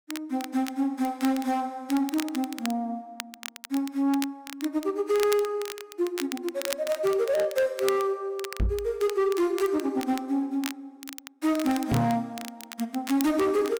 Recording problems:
distortion; hard clipping, signal-to-distortion ratio 10 dB
crackling; vinyl, SNR 12 dB
knock on the microphone; at 8.5 s and at 12 s; peak +7 dB vs average level

